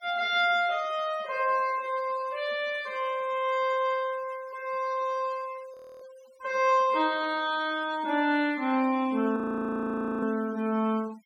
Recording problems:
denoising artefacts; signal-to-artefact ratio 23 dB
frozen audio; at 5.5 s and at 9.5 s for 1 s

